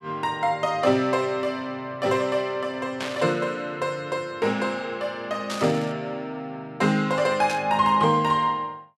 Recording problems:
burst of static; at 3 s, at 5.5 s and at 7.5 s; peak -4 dB vs average level

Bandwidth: 13 kHz